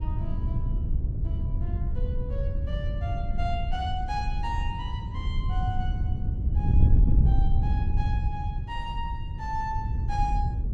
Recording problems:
wind noise; below 96 Hz, SNR -8 dB

